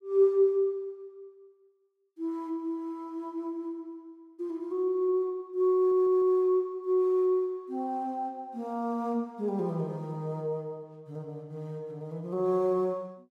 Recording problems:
audio stuttering; at 6 s

